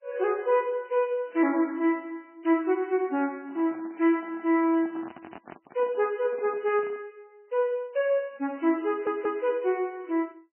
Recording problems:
codec artefacts; MP3, log-spectral distance 2 dB, nothing above 3 kHz
handling noise; from 3.5 to 7 s; peak -12 dB vs average level
audio stuttering; at 9 s

